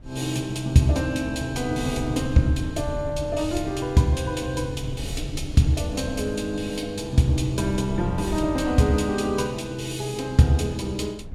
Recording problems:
wind on the microphone; below 120 Hz, SNR 12 dB

